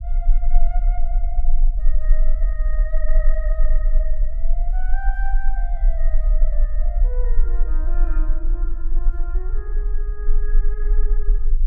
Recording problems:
rumble; below 34 Hz, strongest tone 18 Hz, SNR -15 dB

